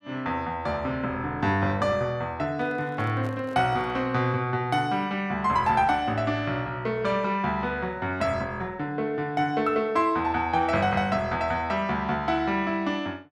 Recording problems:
handling noise; from 2.5 to 4 s; peak -10 dB vs average level

